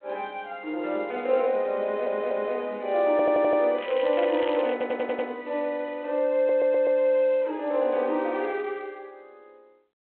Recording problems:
telephone audio; 260 Hz to 3.7 kHz, G.726
stutter; 4 times, first at 2 s
crackle; from 4 to 5 s; loose cable, SNR 17 dB

